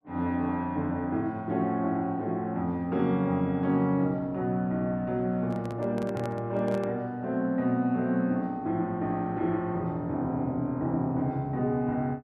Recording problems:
microphone handling noise; from 5.5 to 7 s; peak -6 dB vs average level

